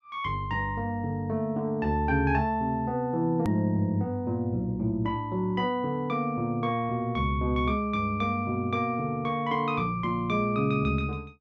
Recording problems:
edit click; at 3.5 s

